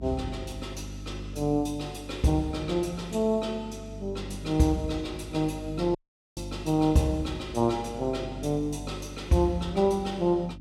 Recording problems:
electrical hum; 50 Hz, harmonics up to 300 Hz, SNR 13 dB
dropout; at 6 s

